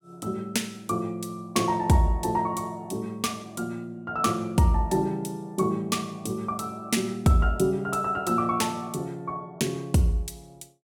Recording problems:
none

